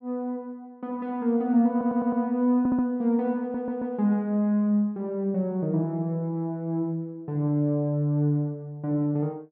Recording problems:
audio stuttering; at 1.5 s, at 2.5 s and at 3.5 s

